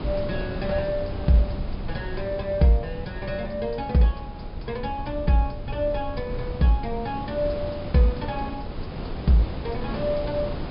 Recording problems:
low-pass filter; nothing above 5.2 kHz
rumble; below 88 Hz, SNR 13 dB
wind on the microphone; below 480 Hz, SNR 10 dB

